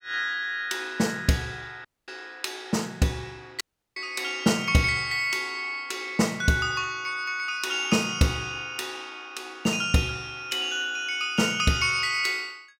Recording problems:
dropout; at 2 s and at 3.5 s

